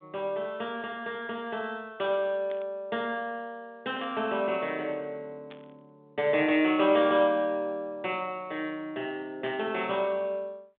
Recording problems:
phone line; 190 Hz to 3.6 kHz, G.726
static burst; 4 times, first at 2.5 s; peak -12 dB vs average level

